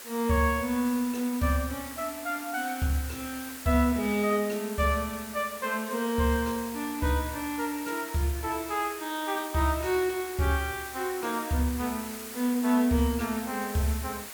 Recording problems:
background hiss; slope -1 dB per octave, SNR 11 dB

